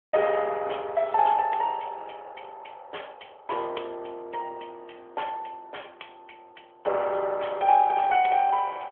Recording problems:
phone line; 340 Hz to 3.3 kHz, AMR-NB

